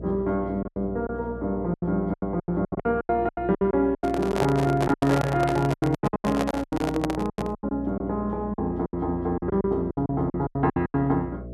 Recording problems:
hum; 60 Hz, harmonics up to 660 Hz, SNR 13 dB
lost packets; 18% of the sound replaced, filled with silence
handling noise; from 4 to 7.5 s; peak +3 dB vs average level

